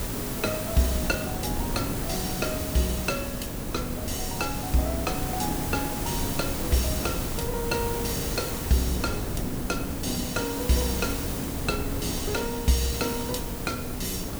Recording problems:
background hiss; slope -4 dB per octave, SNR 4 dB
wind on the microphone; below 310 Hz, SNR 5 dB

